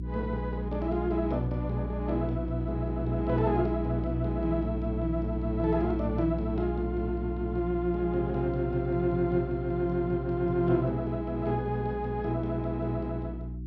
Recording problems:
electrical hum; 60 Hz, harmonics up to 360 Hz, SNR 5 dB

